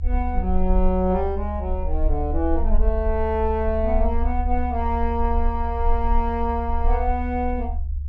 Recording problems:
treble missing; nothing above 8 kHz
rumble; below 70 Hz, SNR 1 dB

